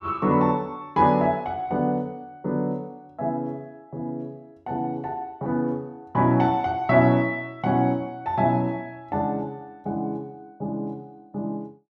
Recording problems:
none

